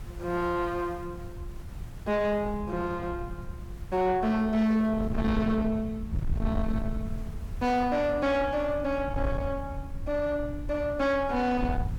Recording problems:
distortion; soft clipping, signal-to-distortion ratio 10 dB
background hiss; slope -4 dB per octave, SNR 28 dB
wind on the microphone; below 130 Hz, SNR 9 dB

